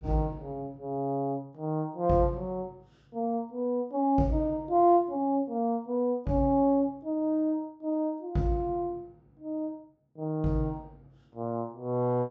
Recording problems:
treble missing; nothing above 8 kHz

